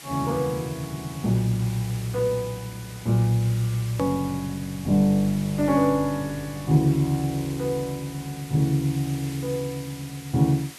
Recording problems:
hiss; slope 0 dB per octave, SNR 16 dB
click at an edit; at 4 s

